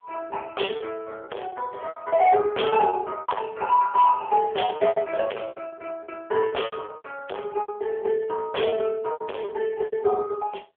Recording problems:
telephone audio; 340 Hz to 3 kHz, AMR-NB
distorted audio; hard clipping, signal-to-distortion ratio 4 dB
lost packets; 13% of the sound replaced, filled with repeated pitch periods

